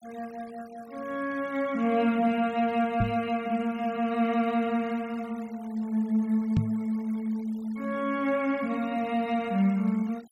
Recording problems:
denoising artefacts; signal-to-artefact ratio 24 dB
knock on the microphone; at 3 s and at 6.5 s; peak +7 dB vs average level

